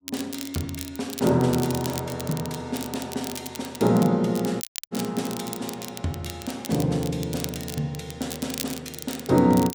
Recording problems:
crackling; vinyl, SNR 11 dB
dropout; at 4.5 s

